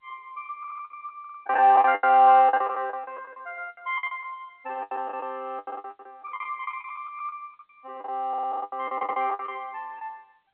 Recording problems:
phone line; 280 Hz to 3.1 kHz, G.711
packet loss; 18% of the sound replaced, filled with the last packet
stutter; 4 times, first at 0.5 s

